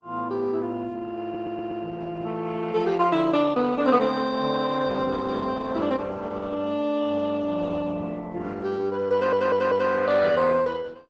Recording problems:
codec artefacts; Opus, log-spectral distance 3 dB, nothing above 7.8 kHz
audio stuttering; at 1 s and at 9 s

